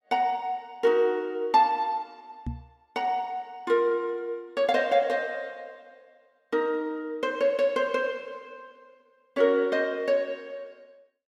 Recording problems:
knock on the microphone; at 2.5 s; peak -3 dB vs average level

